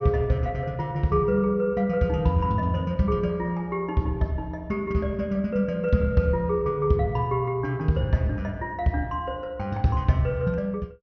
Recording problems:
low-pass filter; nothing above 6.5 kHz

